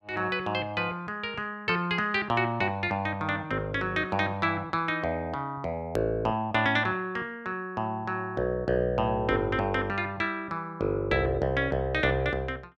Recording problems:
click at an edit; at 6 s

